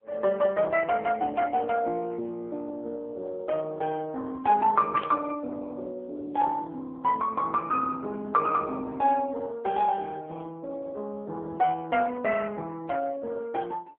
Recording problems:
telephone audio; 240 Hz to 2.9 kHz, AMR-NB
static burst; at 5 s; peak -6 dB vs average level

